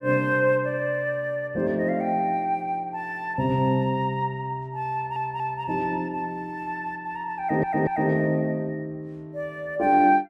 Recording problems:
audio stuttering; at 5 s and at 7.5 s

